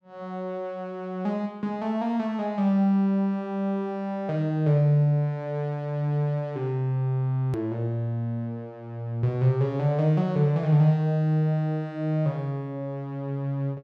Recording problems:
click at an edit; at 7.5 s

